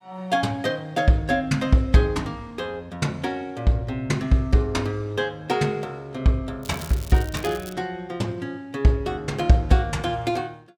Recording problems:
crackle; from 6.5 to 7.5 s; loose cable, SNR 17 dB

